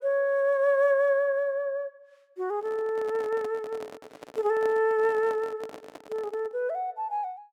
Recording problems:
microphone handling noise; from 2.5 to 6.5 s; peak -9 dB vs average level

